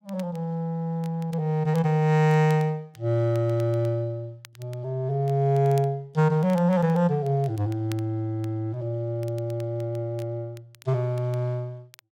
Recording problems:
crackle; vinyl, SNR 27 dB

